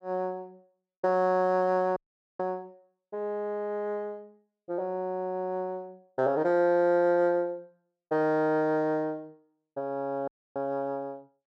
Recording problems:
audio cutting out; at 2 s and at 10 s

